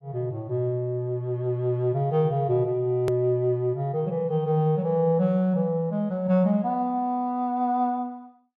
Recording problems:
edit click; at 3 s

